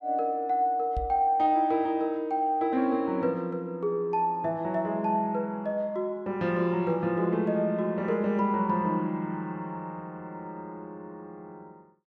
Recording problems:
microphone thump; at 1 s; peak -3 dB vs average level

